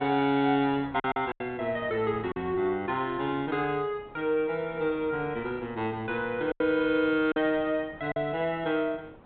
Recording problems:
treble cut off; nothing above 4 kHz
wind noise; below 800 Hz, SNR 22 dB
lost packets; 4% of the sound replaced, filled with silence

